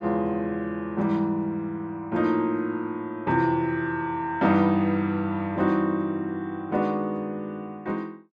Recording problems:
none

